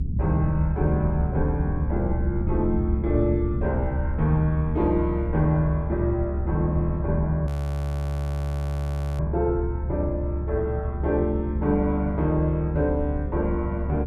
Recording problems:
rumble; below 90 Hz, strongest tone 70 Hz, SNR 2 dB
audio freezing; at 7.5 s for 1.5 s

